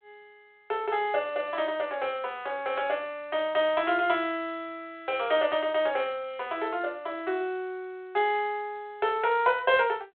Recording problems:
phone line; 340 Hz to 3.5 kHz, G.726

